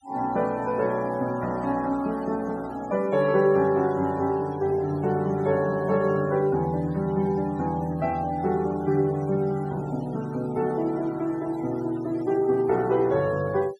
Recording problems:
denoising artefacts; signal-to-artefact ratio 22 dB

